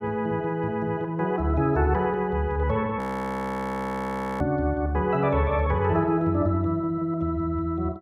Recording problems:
audio freezing; at 3 s for 1.5 s

